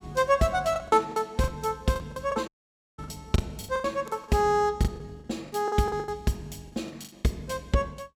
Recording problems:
lost packets; 13% of the sound replaced, filled with the last packet
audio cutting out; at 2.5 s for 0.5 s

